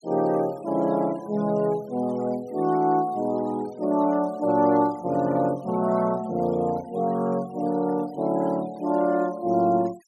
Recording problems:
noise reduction artefacts; signal-to-artefact ratio 26 dB

